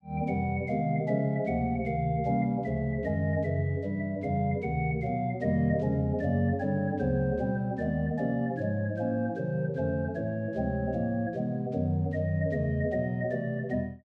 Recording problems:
none

